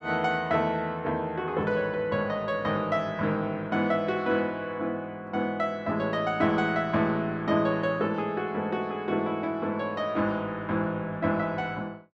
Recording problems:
none

